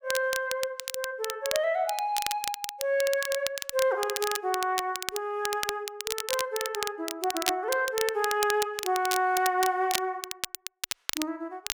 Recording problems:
crackling; vinyl, SNR 5 dB

